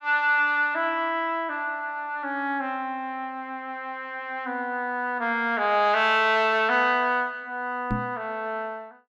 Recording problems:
knock on the microphone; at 8 s; peak +1 dB vs average level

